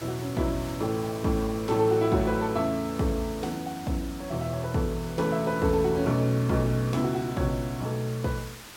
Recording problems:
background hiss; slope -1 dB per octave, SNR 16 dB

